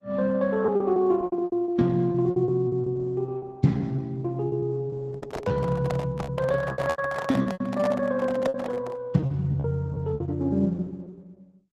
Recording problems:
lossy codec; Opus, log-spectral distance 2 dB
packet loss; 15% of the sound replaced, filled with repeated pitch periods
microphone handling noise; from 5 to 9 s; peak 0 dB vs average level

